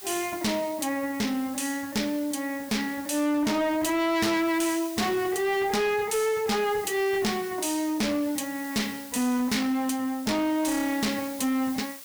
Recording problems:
distortion; hard clipping, signal-to-distortion ratio 7 dB
background hiss; slope +2 dB per octave, SNR 16 dB

